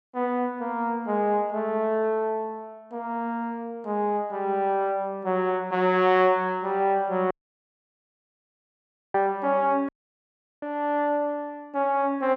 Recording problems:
audio cutting out; at 7.5 s for 2 s and at 10 s for 0.5 s

